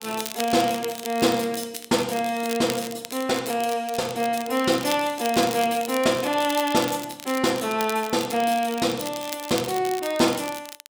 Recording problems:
crackle; vinyl, SNR 12 dB

